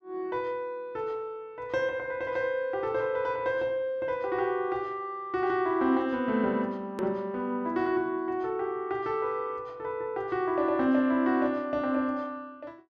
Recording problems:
hard cut with a click; at 7 s

